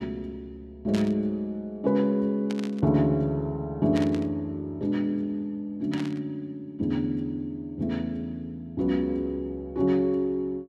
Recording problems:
static burst; 4 times, first at 1 s; peak -5 dB vs average level

